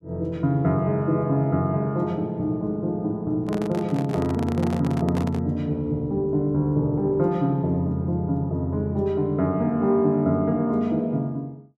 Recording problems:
microphone handling noise; from 3.5 to 5.5 s; peak -6 dB vs average level

